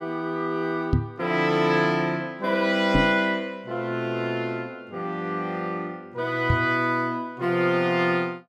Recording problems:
knock on the microphone; at 1 s, at 3 s and at 6.5 s; peak +6 dB vs average level

